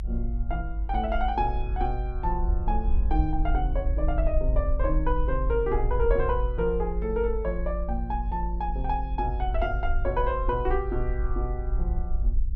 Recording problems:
rumble; below 52 Hz, SNR 0 dB

